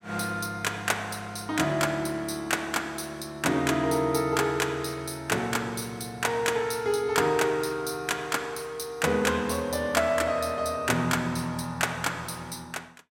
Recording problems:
none

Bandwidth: 16.5 kHz